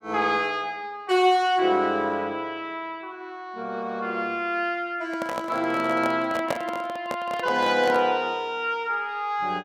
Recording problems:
microphone handling noise; from 5 to 8 s; peak +1 dB vs average level

